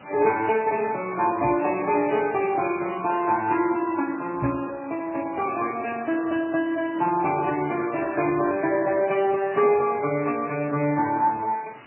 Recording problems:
lossy codec; Speex, then MP3, log-spectral distance 8 dB, nothing above 2.6 kHz
background hiss; SNR 22 dB
knock on the microphone; at 1.5 s and at 4.5 s; peak -3 dB vs average level

